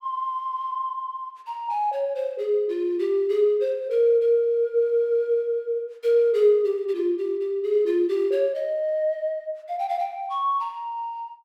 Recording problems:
none

